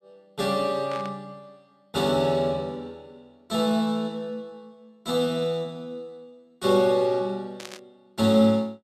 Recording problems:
static burst; at 1 s and at 7.5 s; peak -10 dB vs average level

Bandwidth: 14.5 kHz